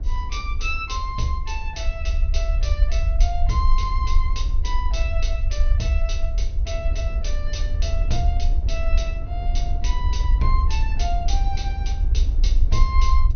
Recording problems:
treble missing; nothing above 6.2 kHz
low-frequency rumble; below 56 Hz, SNR -6 dB
wind noise; below 90 Hz, SNR 6 dB

